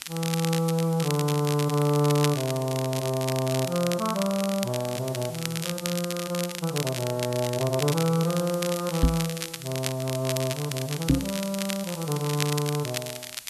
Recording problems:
hiss; SNR 17 dB
crackle; vinyl, SNR 7 dB
microphone thump; at 9 s and at 11 s; peak +9 dB vs average level

